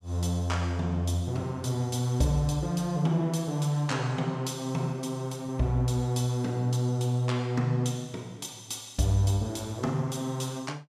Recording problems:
none

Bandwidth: 14.5 kHz